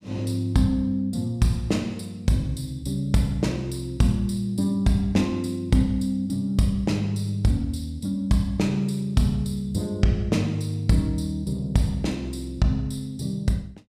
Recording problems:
none

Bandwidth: 15.5 kHz